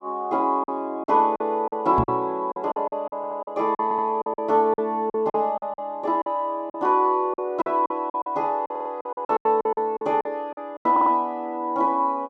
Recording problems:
lost packets; 13% of the sound replaced, filled with silence
microphone thump; at 2 s; peak +2 dB vs average level
audio stuttering; 4 times, first at 3 s

